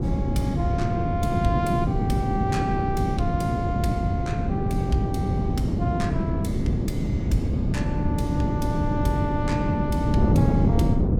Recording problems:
wind on the microphone; below 240 Hz, SNR -5 dB

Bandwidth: 17 kHz